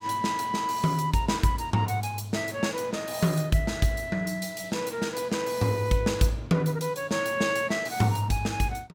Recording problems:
none

